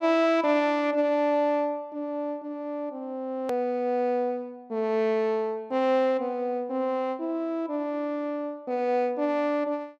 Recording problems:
click at an edit; at 3.5 s

